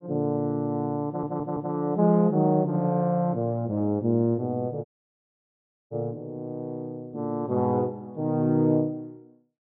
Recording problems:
treble cut off; nothing above 4 kHz
audio stuttering; at 1 s
dropout; at 5 s for 1 s

